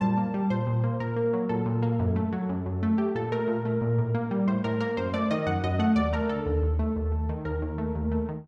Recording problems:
none

